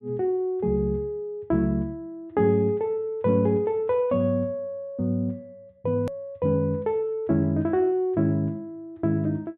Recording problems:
treble missing; nothing above 4 kHz
hard cut with a click; at 6 s

